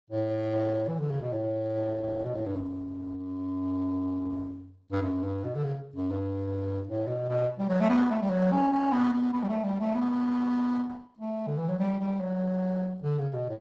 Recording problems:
codec artefacts; Opus, log-spectral distance 2 dB, nothing above 7.8 kHz

